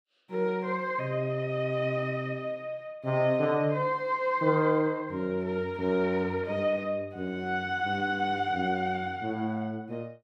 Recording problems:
none

